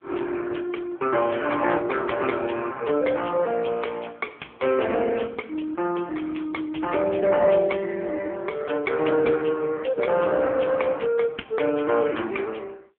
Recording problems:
phone line; 260 Hz to 3.3 kHz, AMR-NB

